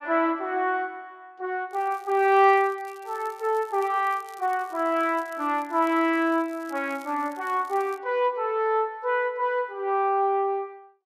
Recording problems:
crackle; from 1.5 to 8 s; loose cable, SNR 28 dB

